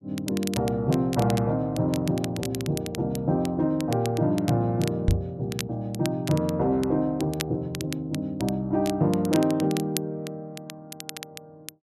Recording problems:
crackling; vinyl, SNR 13 dB
microphone thump; at 5 s; peak +7 dB vs average level

